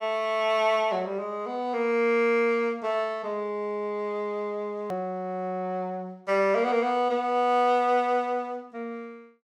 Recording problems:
hard cut with a click; at 5 s

